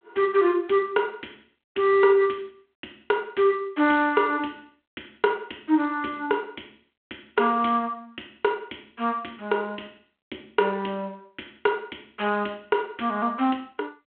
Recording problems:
telephone audio; 260 Hz to 3.4 kHz, G.726

